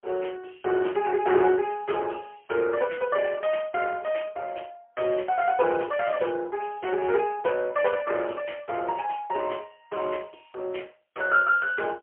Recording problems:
telephone audio; 260 Hz to 3.2 kHz, AMR-NB, then MP3

